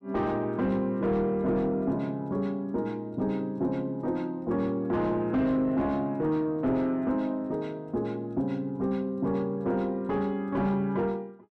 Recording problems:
distortion; soft clipping, signal-to-distortion ratio 11 dB

